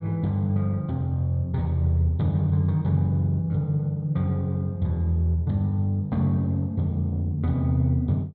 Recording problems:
none

